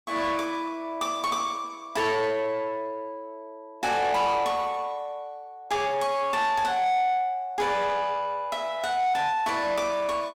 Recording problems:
distortion; soft clipping, signal-to-distortion ratio 10 dB

